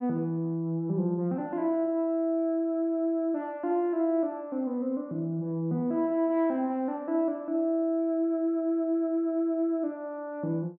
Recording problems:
none

